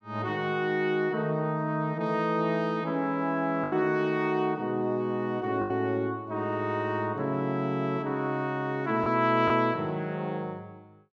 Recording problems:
packet loss; 1.9% of the sound replaced, filled with the last packet

